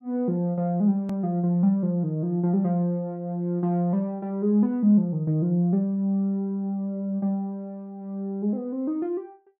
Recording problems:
edit click; at 1 s

